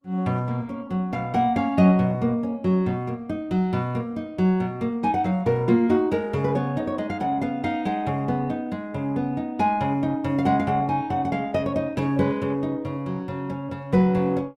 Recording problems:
codec artefacts; Opus, log-spectral distance 2 dB

